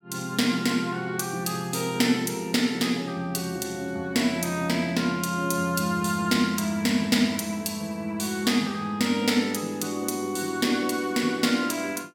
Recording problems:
none

